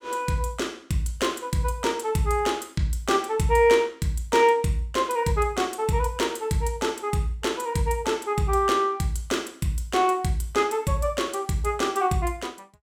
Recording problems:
none

